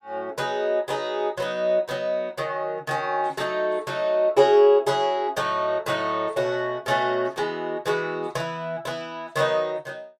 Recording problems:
none

